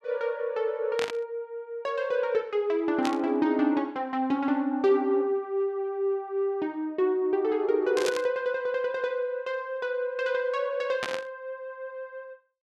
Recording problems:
burst of static; 4 times, first at 1 s; peak 0 dB vs average level

